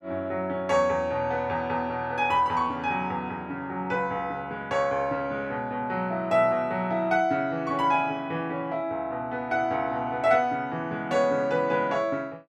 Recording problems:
none

